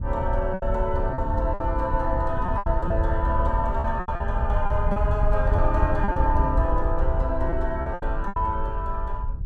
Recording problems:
wind noise; below 74 Hz, SNR 0 dB
lost packets; 9% of the sound replaced, filled with repeated pitch periods

